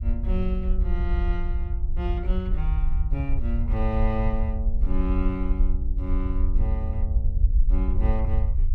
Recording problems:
rumble; below 60 Hz, SNR -6 dB

